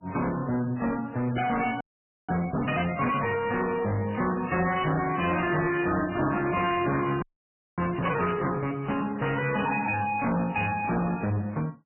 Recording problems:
lossy compression; AAC, then MP3, log-spectral distance 6 dB, nothing above 2.5 kHz
distorted audio; hard clipping, signal-to-distortion ratio 6 dB
frozen audio; at 2 s and at 7 s for 0.5 s
crackling; from 4 to 8.5 s; loose cable, SNR 16 dB

